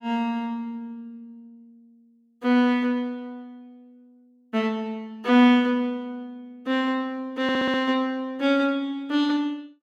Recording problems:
audio stuttering; at 7.5 s

